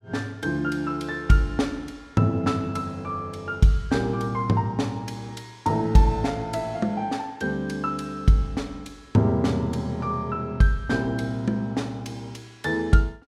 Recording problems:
none

